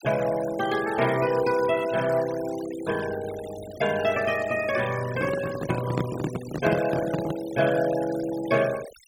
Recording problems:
denoising artefacts; signal-to-artefact ratio 14 dB
handling noise; from 5 to 7.5 s; peak +2 dB vs average level

